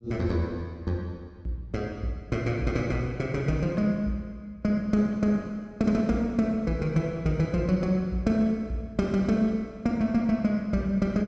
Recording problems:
none

